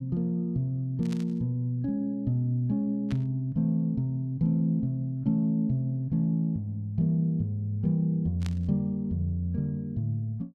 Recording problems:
burst of static; at 1 s, at 3 s and at 8.5 s; peak -9 dB vs average level

